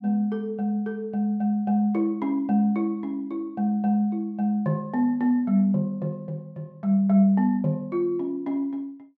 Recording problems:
none

